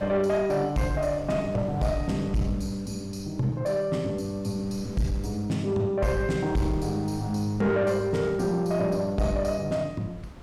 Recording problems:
distortion; soft clipping, signal-to-distortion ratio 11 dB
wind on the microphone; below 340 Hz, SNR 18 dB

